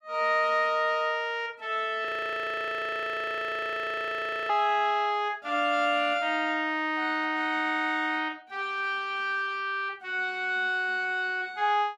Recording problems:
frozen audio; at 2 s for 2.5 s

